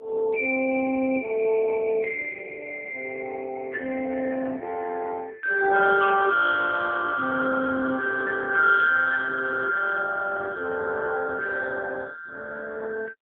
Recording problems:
telephone audio; 320 Hz to 2.3 kHz, AMR-NB

